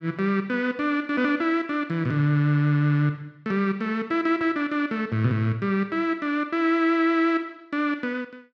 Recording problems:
none

